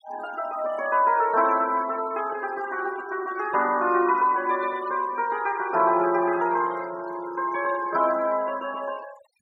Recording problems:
noise reduction artefacts; signal-to-artefact ratio 20 dB

